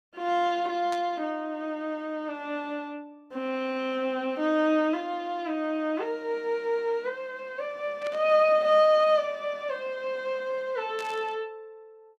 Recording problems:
static burst; at 1 s, at 8 s and at 11 s; peak -9 dB vs average level

